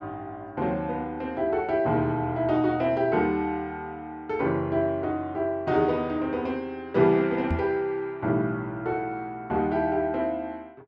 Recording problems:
microphone thump; at 7.5 s; peak +3 dB vs average level

